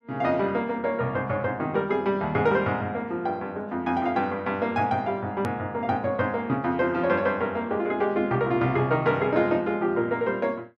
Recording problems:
hard cut with a click; at 5.5 s

